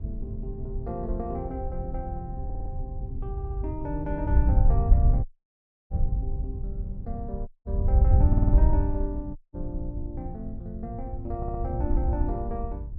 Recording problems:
rumble; below 96 Hz, SNR 7 dB
wind on the microphone; below 78 Hz, SNR -7 dB
audio stuttering; 4 times, first at 2.5 s
audio cutting out; at 5.5 s for 0.5 s, at 7.5 s and at 9.5 s

